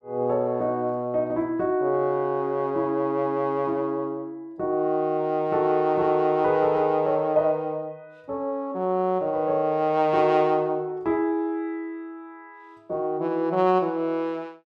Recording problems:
none

